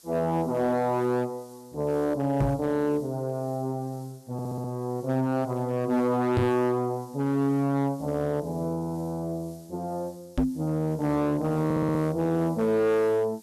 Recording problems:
distortion; hard clipping, signal-to-distortion ratio 11 dB
background hiss; SNR 27 dB
microphone thump; at 2.5 s, at 6.5 s and at 10 s; peak +6 dB vs average level
audio stuttering; at 4.5 s and at 12 s

